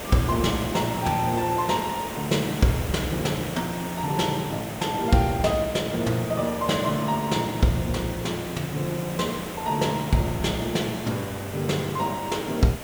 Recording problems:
background hiss; slope -5 dB per octave, SNR 9 dB

